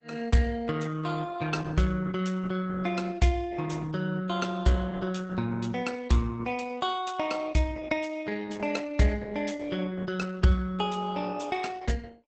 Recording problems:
lossy compression; Opus, log-spectral distance 4 dB, nothing above 8 kHz

